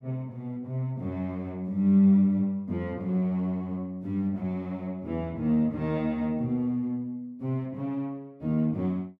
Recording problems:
none

